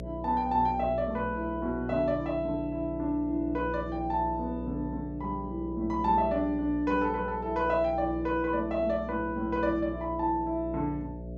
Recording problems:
hum; 60 Hz, harmonics up to 660 Hz, SNR 10 dB

